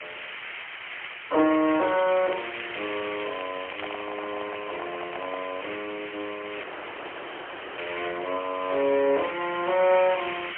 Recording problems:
phone line; 280 Hz to 3.4 kHz, AMR-NB, then MP3
background hiss; SNR 9 dB
crackling; from 1.5 to 4 s; loose cable, SNR 13 dB
microphone handling noise; from 3.5 to 5.5 s; peak -6 dB vs average level
audio cutting out; at 6.5 s for 1 s

